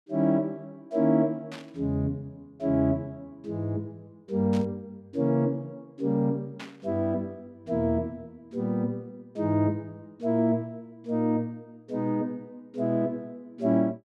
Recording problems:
burst of static; at 1.5 s, at 4.5 s and at 6.5 s; peak -9 dB vs average level

